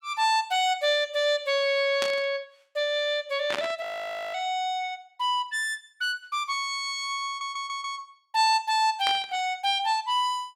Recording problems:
burst of static; at 2 s, at 3.5 s and at 9 s; peak 0 dB vs average level
audio freezing; at 4 s for 0.5 s
audio stuttering; at 7.5 s

